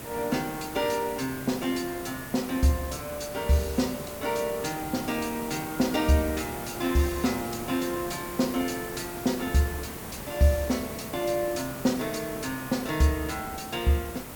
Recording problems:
background hiss; slope -5 dB per octave, SNR 9 dB

